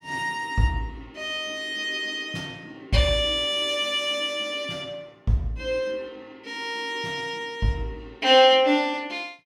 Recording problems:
none

